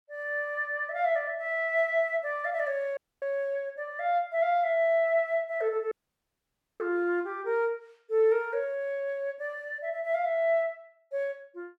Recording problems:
audio cutting out; at 3 s and at 6 s for 1 s

